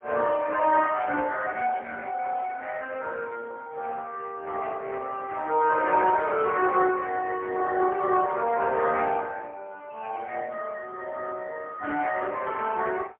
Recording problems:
phone line; 320 Hz to 2.6 kHz, AMR-NB, then MP3

